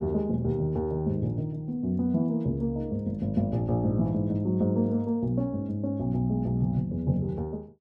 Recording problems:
none

